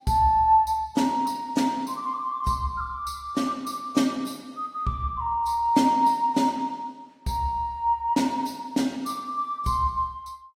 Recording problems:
codec artefacts; AAC, log-spectral distance 2 dB, nothing above 15.1 kHz

